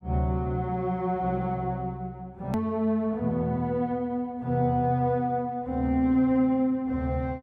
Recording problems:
edit click; at 2.5 s

